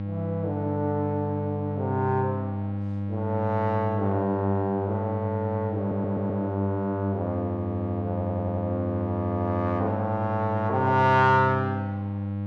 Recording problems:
electrical hum; 50 Hz, harmonics up to 800 Hz, SNR 3 dB
stutter; at 6 s and at 8 s

